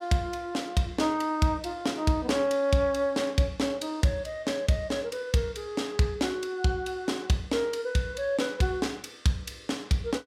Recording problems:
none

